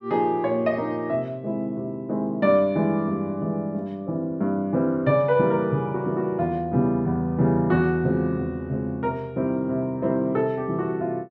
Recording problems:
none

